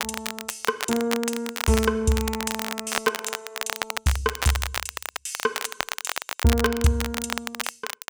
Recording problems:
crackle; vinyl, SNR 4 dB

